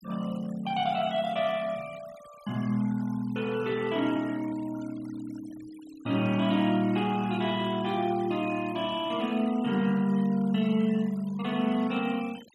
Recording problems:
noise reduction artefacts; signal-to-artefact ratio 21 dB

